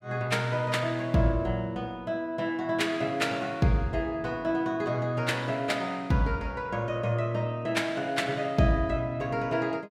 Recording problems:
none

